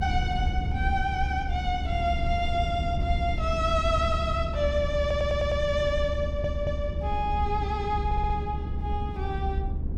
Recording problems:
low-frequency rumble; below 98 Hz, SNR 2 dB
stutter; at 5 s, at 6 s and at 8 s

